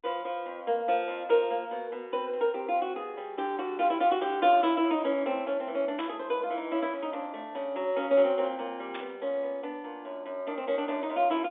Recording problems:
phone line; 260 Hz to 3.6 kHz, G.711
static burst; at 6 s and at 9 s; peak -6 dB vs average level

